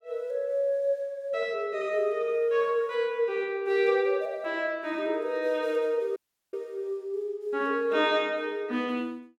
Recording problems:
audio cutting out; at 6 s

